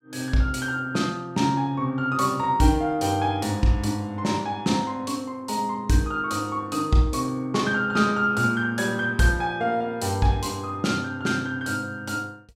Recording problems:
none

